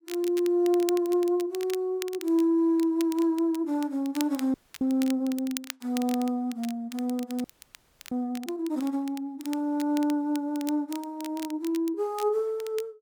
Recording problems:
crackling; vinyl, SNR 16 dB
audio freezing; at 4.5 s and at 7.5 s for 0.5 s

